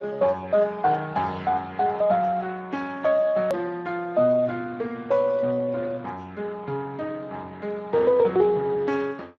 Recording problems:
lossy compression; Speex, log-spectral distance 3 dB, nothing above 13.1 kHz
hard cut with a click; at 3.5 s

